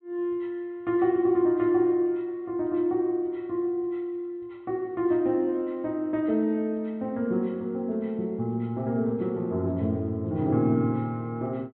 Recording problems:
treble cut off; nothing above 4 kHz

